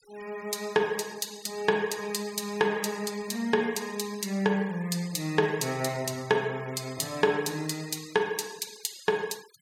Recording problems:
noise reduction artefacts; signal-to-artefact ratio 20 dB

